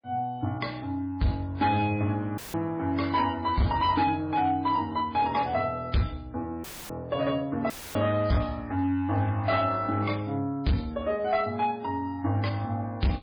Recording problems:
codec artefacts; MP3, then MP3, log-spectral distance 2 dB
distorted audio; hard clipping, signal-to-distortion ratio 11 dB
audio cutting out; at 2.5 s, at 6.5 s and at 7.5 s; filled with static

